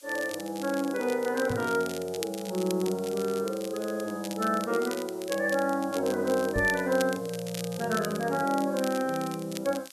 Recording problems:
hiss; slope +4 dB per octave, SNR 22 dB
crackle; vinyl, SNR 13 dB
microphone bump; at 1.5 s and at 6.5 s; peak -1 dB vs average level

